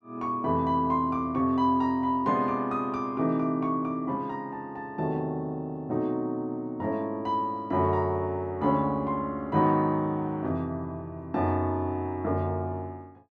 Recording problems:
none

